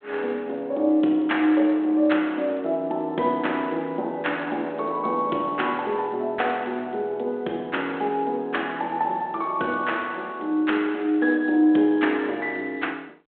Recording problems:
phone line; 260 Hz to 3.6 kHz, G.726

